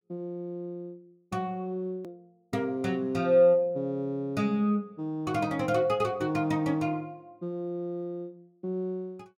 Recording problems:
edit click; at 2 s

